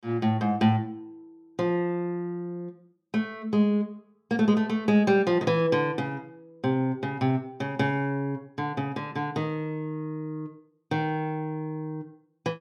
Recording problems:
none

